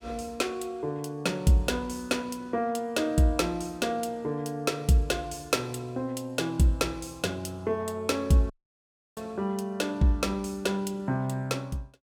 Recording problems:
dropout; at 8.5 s for 0.5 s

